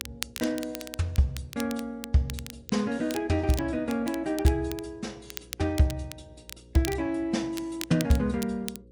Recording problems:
lossy compression; MP3, log-spectral distance 2 dB
hum; 60 Hz, harmonics up to 540 Hz, SNR 26 dB
crackle; vinyl, SNR 13 dB

